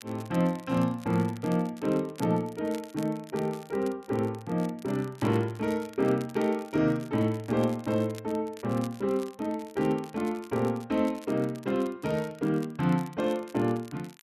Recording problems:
crackling; vinyl, SNR 22 dB

